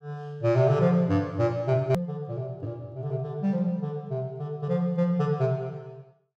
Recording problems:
click at an edit; at 2 s

